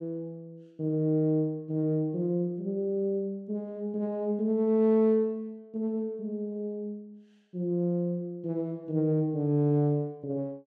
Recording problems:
none

